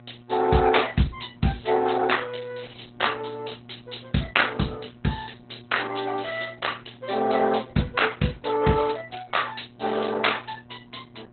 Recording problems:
lossy codec; Opus, log-spectral distance 9 dB, nothing above 4.1 kHz
electrical hum; 60 Hz, harmonics up to 1.4 kHz, SNR 24 dB

